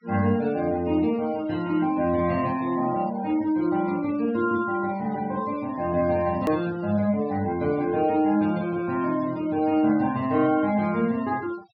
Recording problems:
low-pass filter; nothing above 5.5 kHz
denoising artefacts; signal-to-artefact ratio 22 dB
click at an edit; at 6.5 s

